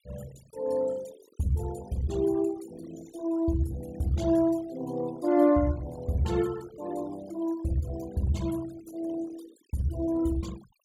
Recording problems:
denoising artefacts; signal-to-artefact ratio 21 dB

